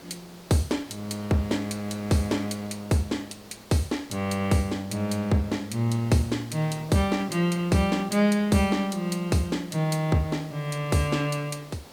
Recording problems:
hiss; slope -4 dB per octave, SNR 21 dB

